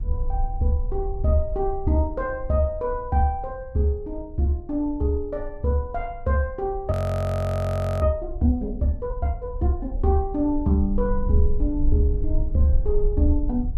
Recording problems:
low-frequency rumble; below 50 Hz, SNR 7 dB
audio freezing; at 7 s for 1 s

